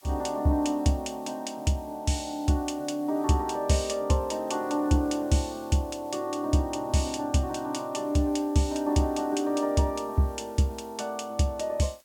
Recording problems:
hiss; slope +1 dB per octave, SNR 27 dB

